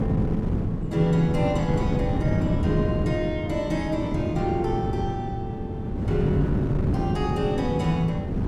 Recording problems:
wind on the microphone; below 250 Hz, SNR 1 dB

